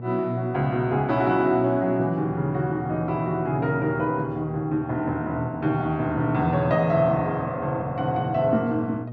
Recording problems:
mains hum; 60 Hz, harmonics up to 720 Hz, SNR 12 dB

